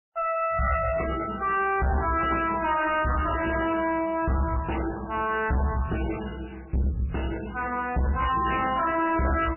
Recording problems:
lossy compression; MP3, then MP3, log-spectral distance 6 dB, nothing above 2.9 kHz
distortion; soft clipping, signal-to-distortion ratio 6 dB

